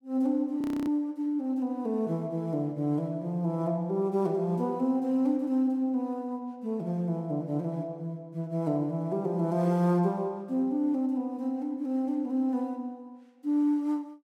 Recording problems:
audio freezing; at 0.5 s

